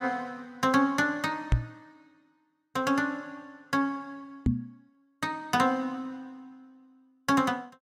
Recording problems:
microphone thump; at 1.5 s and at 4.5 s; peak +8 dB vs average level

